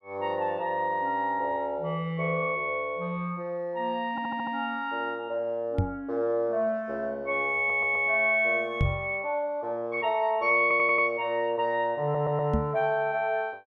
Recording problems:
audio stuttering; 4 times, first at 4 s
microphone bump; at 6 s, at 9 s and at 13 s; peak +4 dB vs average level

